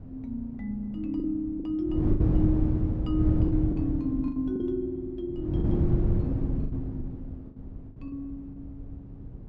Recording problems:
wind noise; below 170 Hz, SNR -3 dB
lost packets; 8% of the sound replaced, filled with the last packet

